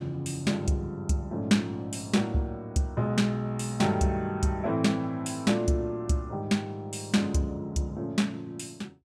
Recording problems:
none

